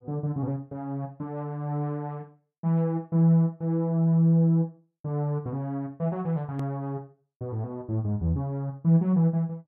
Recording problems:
edit click; at 6.5 s

